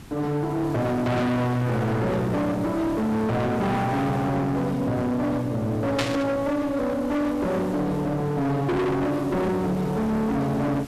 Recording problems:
distorted audio; hard clipping, uneven, signal-to-distortion ratio 5 dB
hiss; slope -5 dB per octave, SNR 17 dB
static burst; at 6 s; peak +2 dB vs average level

